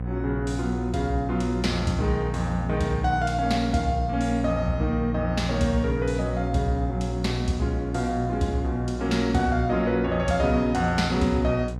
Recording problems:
mains hum; 60 Hz, harmonics up to 780 Hz, SNR 5 dB

